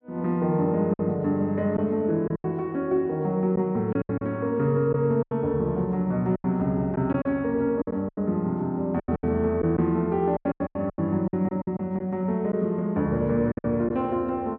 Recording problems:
lost packets; 10% of the sound replaced, filled with silence

